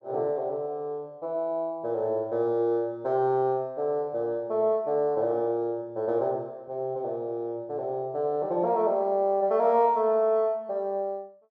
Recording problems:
none

